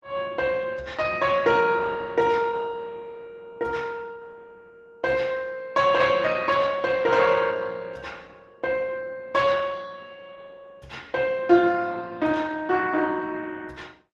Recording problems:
lossy compression; Opus, log-spectral distance 4 dB

